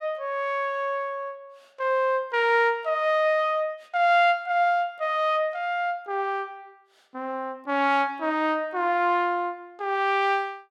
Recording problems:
none

